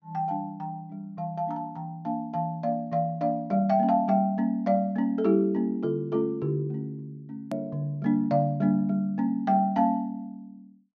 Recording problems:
treble missing; nothing above 6.9 kHz
edit click; at 7.5 s

